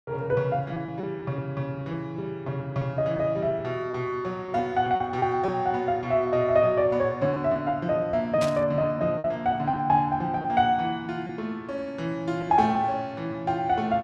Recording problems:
packet loss; 5% of the sound replaced, filled with repeated pitch periods
static burst; at 8.5 s; peak -4 dB vs average level

